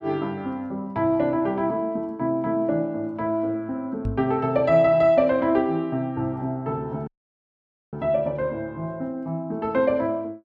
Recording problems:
knock on the microphone; at 4 s; peak -1 dB vs average level
dropout; at 7 s for 1 s

